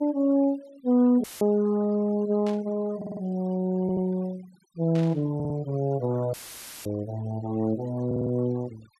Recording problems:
denoising artefacts; signal-to-artefact ratio 24 dB
dropout; at 1 s and at 6.5 s for 0.5 s; filled with static
static burst; at 2.5 s and at 5 s; peak -13 dB vs average level
audio stuttering; 4 times, first at 3 s

